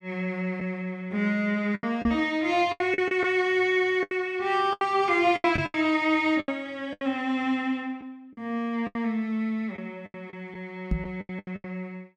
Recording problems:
lost packets; 11% of the sound replaced, filled with the last packet
knock on the microphone; at 2 s, at 5.5 s and at 11 s; peak +2 dB vs average level

